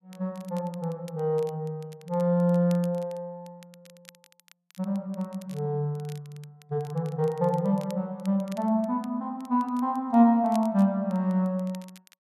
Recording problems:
crackle; vinyl, SNR 27 dB

